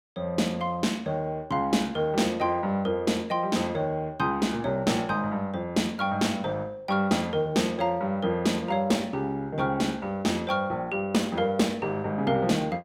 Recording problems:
none

